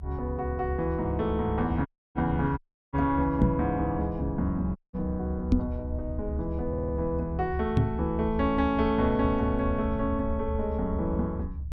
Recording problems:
rumble; below 76 Hz, strongest tone 70 Hz, SNR 6 dB
dropout; at 2 s, at 2.5 s and at 5 s
microphone thump; at 3.5 s, at 5.5 s and at 8 s; peak +9 dB vs average level
audio stuttering; at 6.5 s

